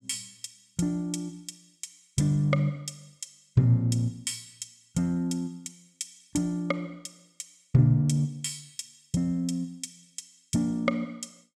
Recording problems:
none

